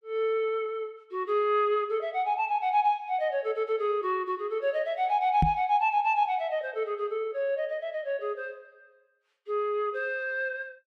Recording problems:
microphone thump; at 5.5 s; peak +6 dB vs average level

